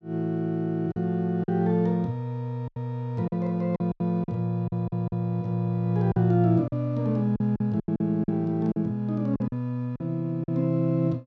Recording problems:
lost packets; 9% of the sound replaced, filled with silence

